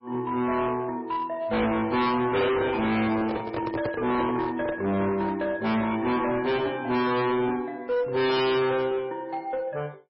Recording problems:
codec artefacts; MP3, log-spectral distance 3 dB, nothing above 4.6 kHz
distortion; hard clipping, uneven, signal-to-distortion ratio 5 dB
microphone handling noise; from 2.5 to 5 s; peak 0 dB vs average level

